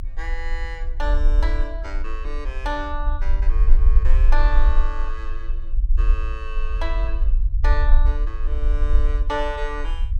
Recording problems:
low-frequency rumble; below 46 Hz, strongest tone 20 Hz, SNR -8 dB

